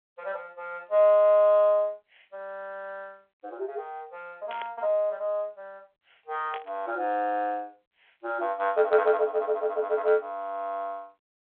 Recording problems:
phone line; 370 Hz to 3.5 kHz, G.726
burst of static; at 4.5 s and at 6.5 s; peak -11 dB vs average level

